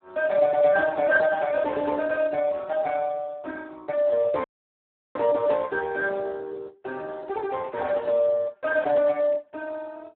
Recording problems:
telephone audio; 190 Hz to 3.1 kHz, Speex
dropout; at 4.5 s for 0.5 s

